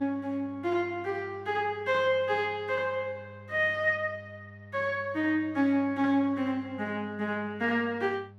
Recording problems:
electrical hum; 50 Hz, harmonics up to 800 Hz, SNR 20 dB

